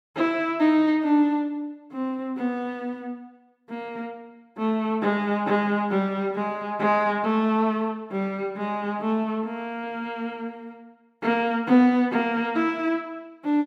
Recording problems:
none

